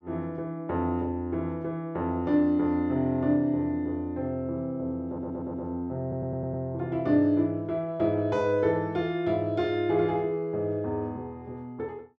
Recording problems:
audio stuttering; at 5 s and at 6 s

